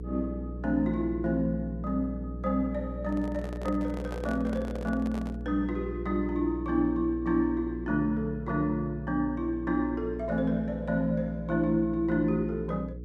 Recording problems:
electrical hum; 60 Hz, harmonics up to 480 Hz, SNR 9 dB
microphone handling noise; from 3 to 5.5 s; peak -6 dB vs average level

